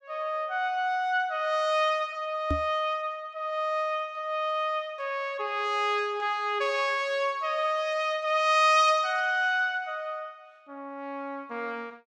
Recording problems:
knock on the microphone; at 2.5 s; peak +1 dB vs average level

